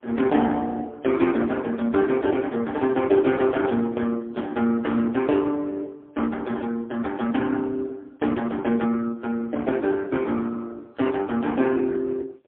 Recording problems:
phone line; 240 Hz to 3.5 kHz, AMR-NB, then MP3

